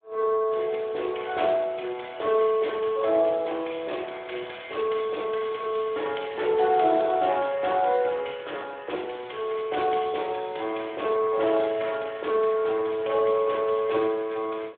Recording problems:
telephone audio; 320 Hz to 3.6 kHz, Speex

